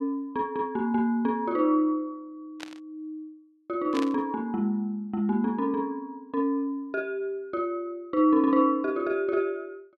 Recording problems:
static burst; at 2.5 s and at 4 s; peak -6 dB vs average level

